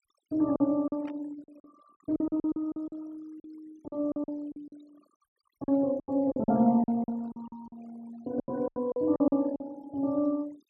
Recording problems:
denoising artefacts; signal-to-artefact ratio 25 dB
packet loss; 15% of the sound replaced, filled with silence
static burst; at 1 s; peak -16 dB vs average level

